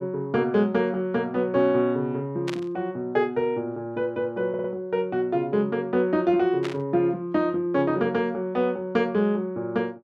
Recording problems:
burst of static; at 2.5 s and at 6.5 s; peak -4 dB vs average level
audio stuttering; at 4.5 s

